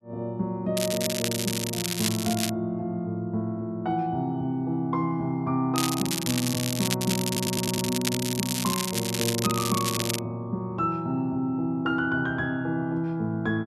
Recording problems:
crackling; from 1 to 2.5 s and from 6 to 10 s; loose cable, SNR 2 dB
audio stuttering; at 7.5 s

